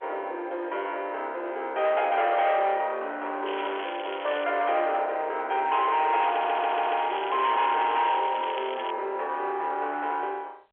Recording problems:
phone line; 370 Hz to 3.6 kHz, G.711
distorted audio; soft clipping, signal-to-distortion ratio 10 dB
crackle; at 3.5 s and from 6 to 9 s; loose cable, SNR 14 dB
stutter; at 6.5 s

